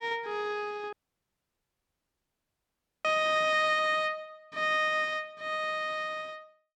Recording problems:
dropout; at 1 s for 2 s

